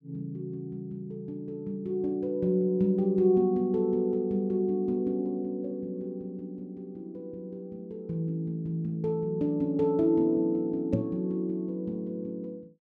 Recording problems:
knock on the microphone; at 11 s; peak +5 dB vs average level

